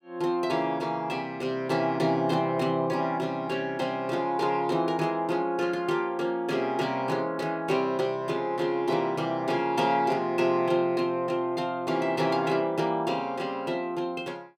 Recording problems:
none

